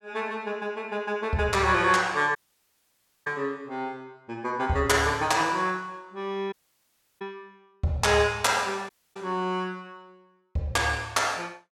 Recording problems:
dropout; at 2.5 s for 1 s, at 6.5 s for 0.5 s and at 9 s

